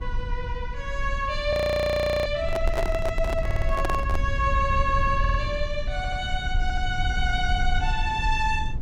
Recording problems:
rumble; below 70 Hz, SNR 3 dB
frozen audio; at 1.5 s for 0.5 s
handling noise; from 2.5 to 4 s; peak +1 dB vs average level
audio stuttering; 4 times, first at 3.5 s

